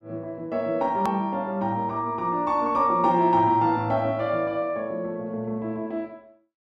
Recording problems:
hard cut with a click; at 1 s

